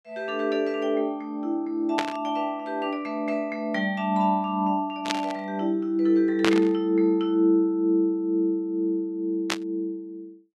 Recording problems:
static burst; 4 times, first at 2 s; peak +4 dB vs average level

